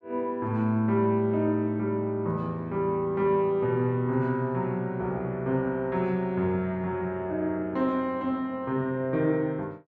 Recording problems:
none

